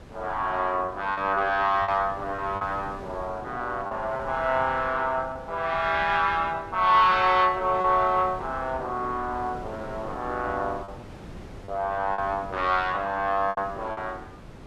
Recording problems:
wind noise; below 520 Hz, SNR 17 dB
lost packets; 4% of the sound replaced, filled with repeated pitch periods

